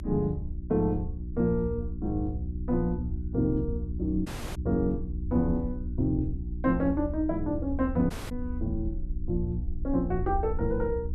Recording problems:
hum; 60 Hz, harmonics up to 360 Hz, SNR 8 dB
rumble; below 76 Hz, strongest tone 20 Hz, SNR 8 dB
audio cutting out; at 4.5 s and at 8 s

